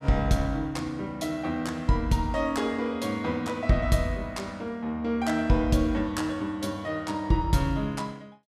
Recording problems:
none

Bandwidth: 14.5 kHz